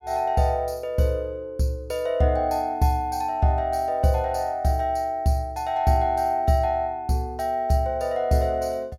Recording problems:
none

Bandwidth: 17.5 kHz